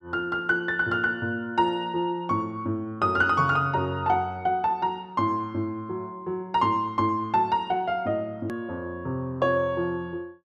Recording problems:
click at an edit; at 8.5 s

